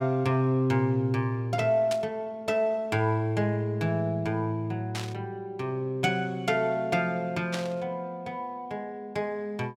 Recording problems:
burst of static; at 2 s, at 5 s and at 7.5 s; peak -2 dB vs average level

